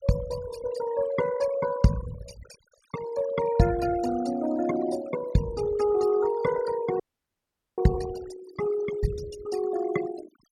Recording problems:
noise reduction artefacts; signal-to-artefact ratio 14 dB
audio freezing; at 7 s for 1 s

